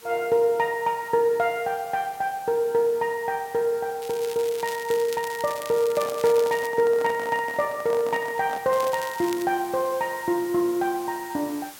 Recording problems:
hiss; slope 0 dB per octave, SNR 20 dB
crackle; from 4 to 6.5 s and at 8.5 s; loose cable, SNR 15 dB
microphone handling noise; from 6 to 9 s; peak -6 dB vs average level

